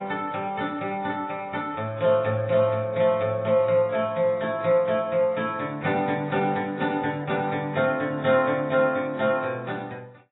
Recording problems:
codec artefacts; AAC, log-spectral distance 2 dB, nothing above 3.8 kHz

